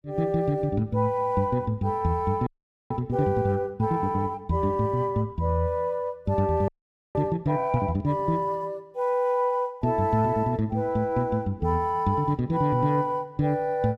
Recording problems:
audio freezing; at 2.5 s and at 6.5 s

